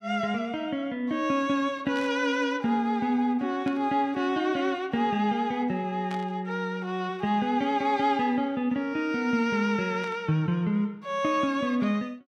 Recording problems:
burst of static; 4 times, first at 2 s; peak -10 dB vs average level

